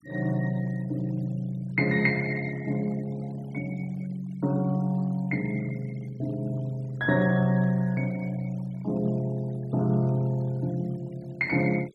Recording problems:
denoising artefacts; signal-to-artefact ratio 25 dB

